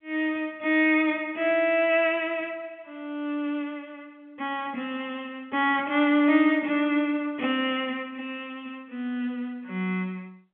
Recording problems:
phone line; 110 Hz to 3.5 kHz, G.711

